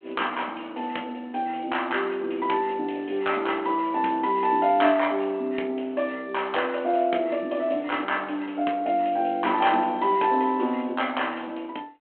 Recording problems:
phone line; 220 Hz to 3.3 kHz, G.726

